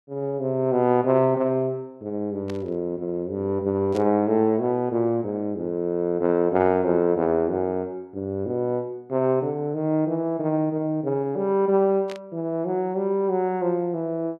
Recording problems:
static burst; at 2.5 s, at 4 s and at 12 s; peak -12 dB vs average level

